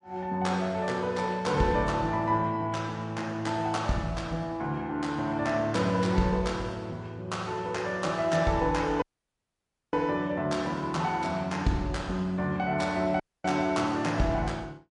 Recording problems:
lossy compression; MP3, log-spectral distance 2 dB, nothing above 10.7 kHz
dropout; at 9 s for 1 s and at 13 s

